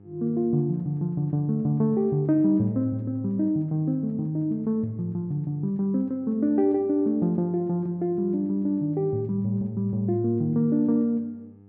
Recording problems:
electrical hum; 50 Hz, harmonics up to 800 Hz, SNR 26 dB

